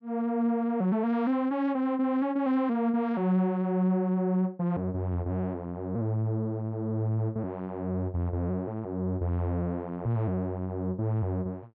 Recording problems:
none

